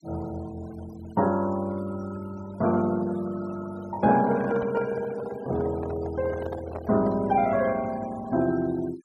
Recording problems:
denoising artefacts; signal-to-artefact ratio 18 dB
handling noise; from 4 to 7.5 s; peak -6 dB vs average level

